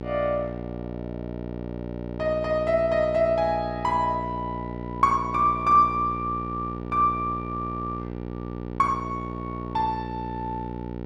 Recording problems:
hum; 60 Hz, harmonics up to 1.4 kHz, SNR 9 dB

